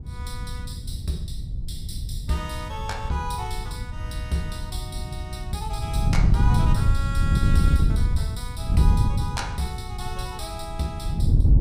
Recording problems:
rumble; below 96 Hz, SNR 7 dB
wind on the microphone; below 120 Hz, SNR -6 dB

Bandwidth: 15.5 kHz